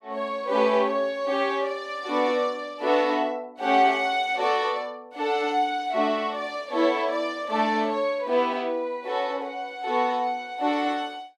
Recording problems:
none

